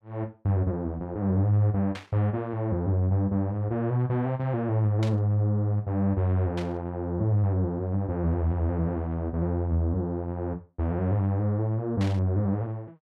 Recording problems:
static burst; 4 times, first at 2 s; peak -8 dB vs average level

